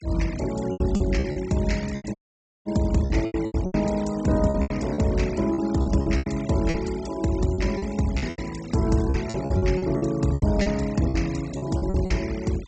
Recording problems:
treble cut off; nothing above 8 kHz
denoising artefacts; signal-to-artefact ratio 18 dB
lost packets; 14% of the sound replaced, filled with repeated pitch periods
dropout; at 2 s for 0.5 s

